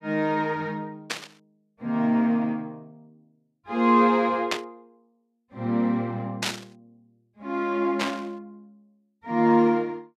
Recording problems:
static burst; 4 times, first at 1 s; peak +2 dB vs average level

